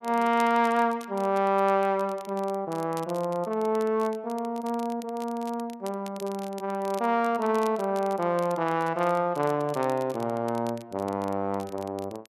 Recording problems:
crackling; vinyl, SNR 22 dB

